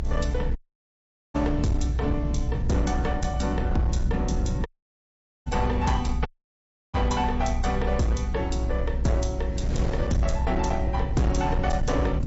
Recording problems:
low-pass filter; nothing above 7.6 kHz
codec artefacts; MP3, log-spectral distance 2 dB
distorted audio; hard clipping, signal-to-distortion ratio 11 dB
low-frequency rumble; below 86 Hz, strongest tone 60 Hz, SNR 1 dB
wind noise; below 180 Hz, SNR 12 dB
audio cutting out; at 0.5 s for 1 s, at 4.5 s for 1 s and at 6.5 s for 0.5 s

